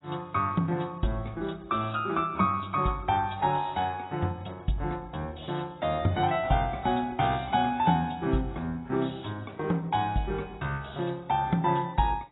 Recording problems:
codec artefacts; AAC, log-spectral distance 4 dB, nothing above 3.8 kHz

